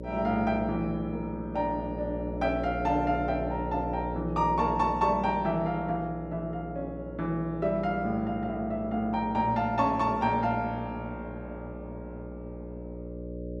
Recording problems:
hum; 60 Hz, harmonics up to 600 Hz, SNR 9 dB

